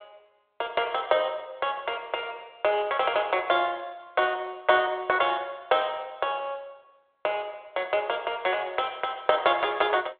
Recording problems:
phone line; 320 Hz to 3.6 kHz, G.726

